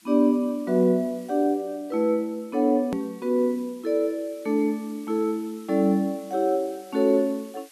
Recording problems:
hiss; slope +3 dB per octave, SNR 27 dB
edit click; at 3 s

